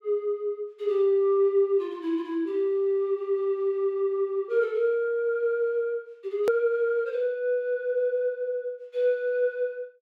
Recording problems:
click at an edit; at 6.5 s

